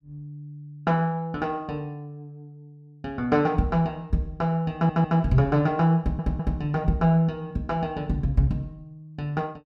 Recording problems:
stutter; at 4.5 s and at 6 s

